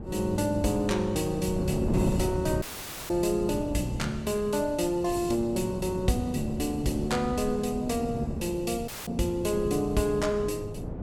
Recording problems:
wind noise; below 310 Hz, SNR 7 dB
audio cutting out; at 2.5 s and at 9 s

